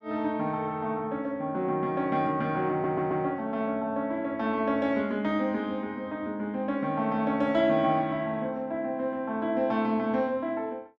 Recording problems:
audio stuttering; at 2.5 s

